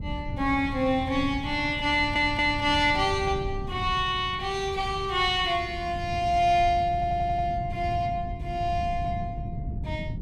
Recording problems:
wind on the microphone; below 150 Hz, SNR 10 dB
audio stuttering; at 2 s and at 7 s

